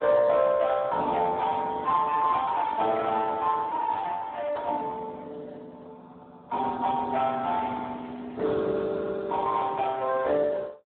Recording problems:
phone line; 220 Hz to 2.1 kHz, Speex

